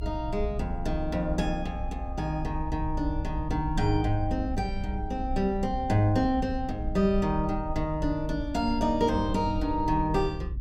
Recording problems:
rumble; below 66 Hz, SNR 7 dB

